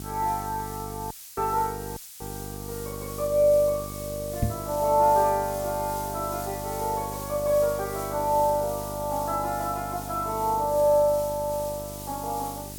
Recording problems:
electrical hum; 50 Hz, harmonics up to 1.1 kHz, SNR 13 dB
background hiss; slope +4 dB per octave, SNR 13 dB
audio cutting out; at 1 s and at 2 s
microphone bump; at 4.5 s; peak +4 dB vs average level

